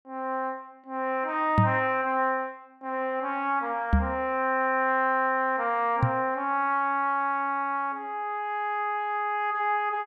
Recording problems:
microphone thump; at 1.5 s, at 4 s and at 6 s; peak +8 dB vs average level

